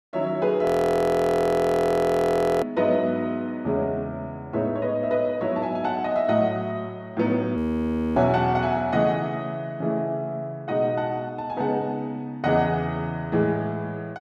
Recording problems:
audio freezing; at 0.5 s for 2 s and at 7.5 s for 0.5 s

